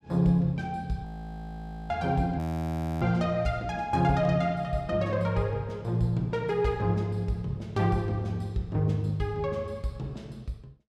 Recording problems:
audio freezing; at 1 s for 1 s and at 2.5 s for 0.5 s

